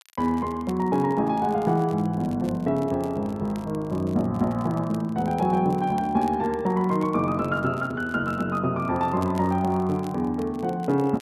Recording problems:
crackle; vinyl, SNR 27 dB

